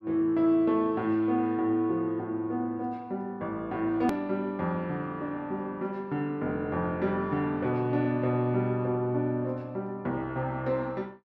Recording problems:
click at an edit; at 4 s

